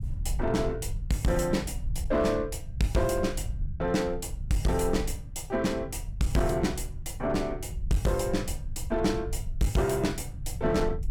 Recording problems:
distorted audio; hard clipping, uneven, signal-to-distortion ratio 11 dB
rumble; below 86 Hz, SNR 8 dB

